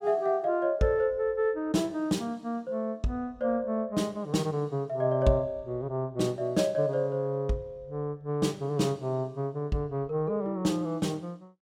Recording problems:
none

